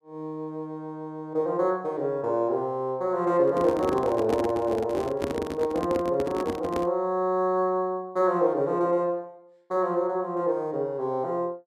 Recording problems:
handling noise; from 3.5 to 7 s; peak +1 dB vs average level

